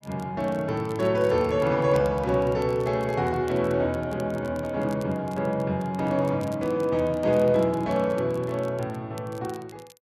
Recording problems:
crackling; vinyl, SNR 27 dB

